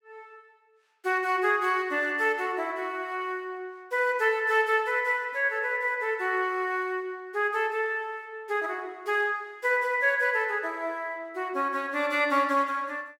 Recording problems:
none

